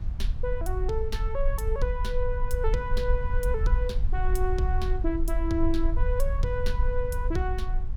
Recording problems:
rumble; below 54 Hz, SNR -2 dB

